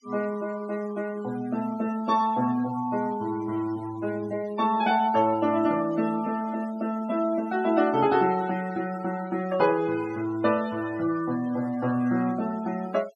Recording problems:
noise reduction artefacts; signal-to-artefact ratio 19 dB

